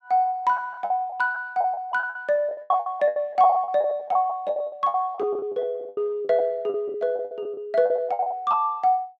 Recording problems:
lost packets; 18% of the sound replaced, filled with the last packet

